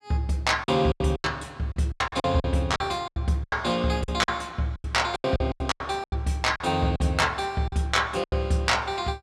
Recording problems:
lost packets; 15% of the sound replaced, filled with silence

